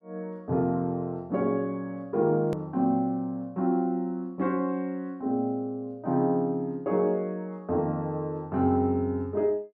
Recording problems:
click at an edit; at 2.5 s

